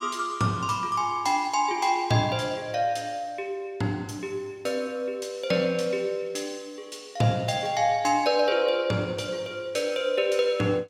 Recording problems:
none

